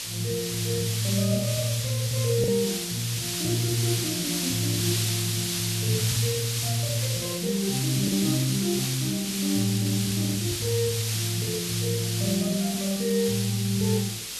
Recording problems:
hum; 50 Hz, harmonics up to 550 Hz, SNR 28 dB
hiss; SNR 2 dB
lost packets; 1.4% of the sound replaced, filled with the last packet

